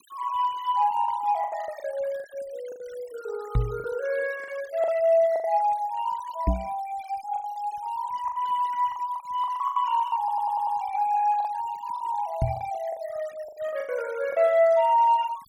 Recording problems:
noise reduction artefacts; signal-to-artefact ratio 22 dB
packet loss; 10% of the sound replaced, filled with the last packet
knock on the microphone; at 3.5 s, at 6.5 s and at 12 s; peak +5 dB vs average level
stutter; at 10 s

